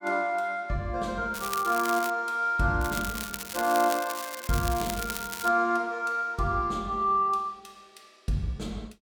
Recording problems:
crackling; at 1.5 s and from 3 to 5.5 s; loose cable, SNR 9 dB

